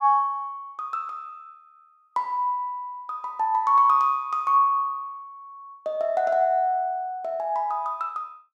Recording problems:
none

